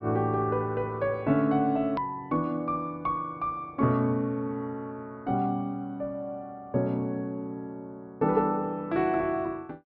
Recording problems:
treble missing; nothing above 5.5 kHz
click at an edit; at 2 s

